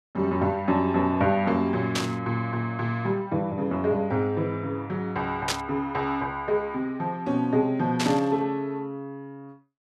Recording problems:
burst of static; at 2 s, at 5.5 s and at 8 s; peak +4 dB vs average level

